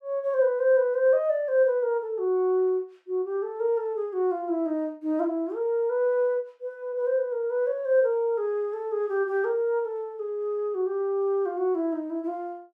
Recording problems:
none

